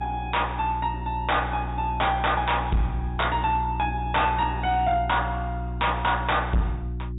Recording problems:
low-pass filter; nothing above 4 kHz
distortion; hard clipping, signal-to-distortion ratio 11 dB
hum; 60 Hz, harmonics up to 360 Hz, SNR 7 dB

